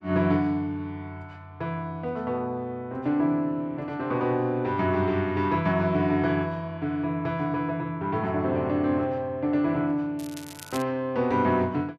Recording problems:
crackle; at 10 s; loose cable, SNR 16 dB

